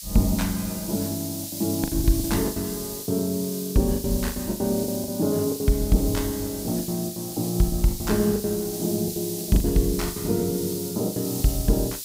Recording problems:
background hiss; SNR 7 dB
lost packets; 13% of the sound replaced, filled with the last packet

